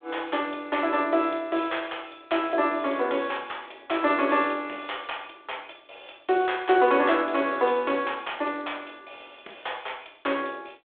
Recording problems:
phone line; 280 Hz to 3.6 kHz, G.726

